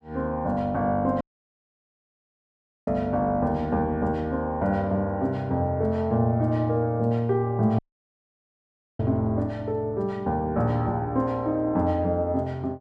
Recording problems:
audio cutting out; at 1 s for 1.5 s and at 8 s for 1 s

